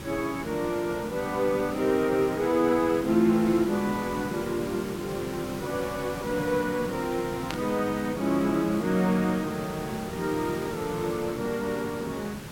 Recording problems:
background hiss; slope -4 dB per octave, SNR 11 dB
static burst; at 7.5 s; peak -2 dB vs average level

